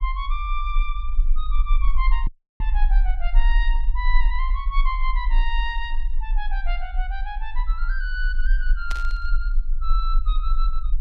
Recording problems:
low-frequency rumble; below 38 Hz, strongest tone 24 Hz, SNR -6 dB
audio cutting out; at 2.5 s
burst of static; at 9 s; peak +1 dB vs average level

